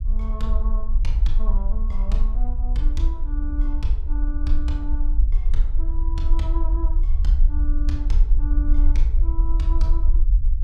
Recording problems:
low-frequency rumble; below 46 Hz, SNR -11 dB

